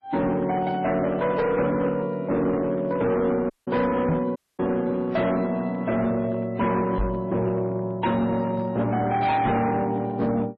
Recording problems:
lossy codec; MP3, log-spectral distance 2 dB
distortion; hard clipping, signal-to-distortion ratio 10 dB
audio cutting out; at 3.5 s and at 4.5 s
microphone thump; at 4 s, at 7 s and at 9.5 s; peak +4 dB vs average level

